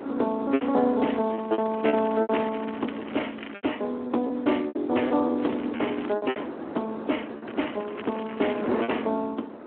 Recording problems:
phone line; 220 Hz to 3.2 kHz, Speex
wind noise; below 690 Hz, SNR 10 dB
packet loss; 9% of the sound replaced, filled with repeated pitch periods
crackle; from 1 to 3.5 s, at 5.5 s and from 7.5 to 9 s; loose cable, SNR 16 dB

